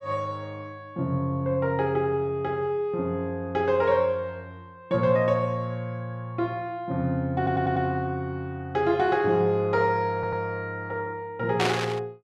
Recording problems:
audio stuttering; at 7.5 s and at 10 s
burst of static; at 12 s; peak +3 dB vs average level

